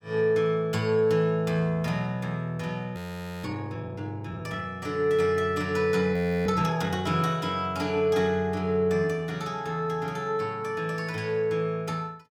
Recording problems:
frozen audio; at 3 s and at 6 s

